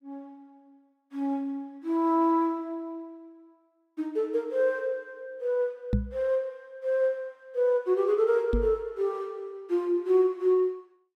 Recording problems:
microphone thump; at 6 s and at 8.5 s; peak +5 dB vs average level

